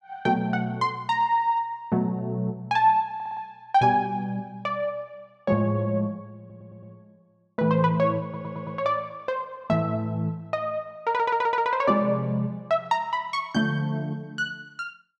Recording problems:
stutter; 4 times, first at 3 s

